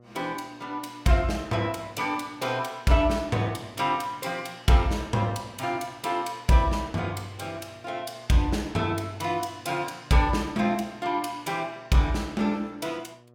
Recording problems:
hum; 60 Hz, harmonics up to 1.3 kHz, SNR 26 dB

